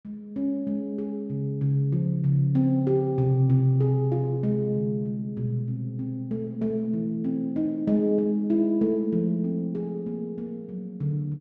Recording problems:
none

